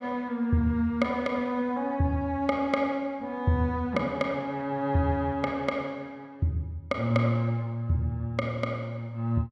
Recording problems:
none

